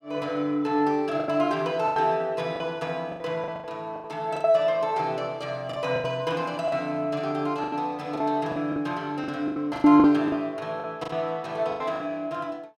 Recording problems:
packet loss; 11% of the sound replaced, filled with the last packet

